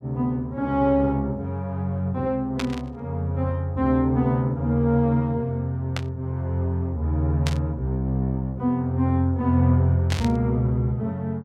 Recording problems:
static burst; 4 times, first at 2.5 s; peak -2 dB vs average level

